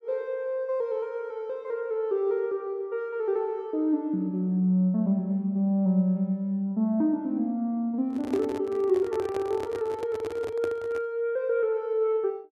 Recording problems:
microphone handling noise; from 8 to 11 s; peak -3 dB vs average level

